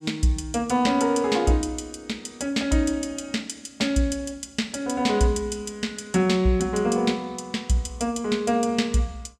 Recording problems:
none

